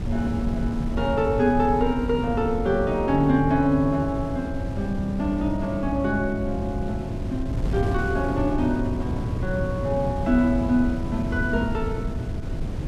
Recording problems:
wind noise; below 180 Hz, SNR 5 dB

